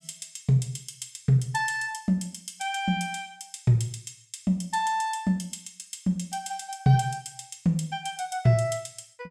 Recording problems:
none

